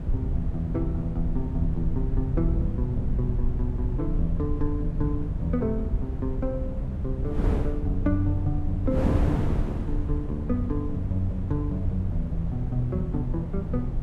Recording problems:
rumble; below 86 Hz, SNR 1 dB
wind noise; below 280 Hz, SNR 5 dB

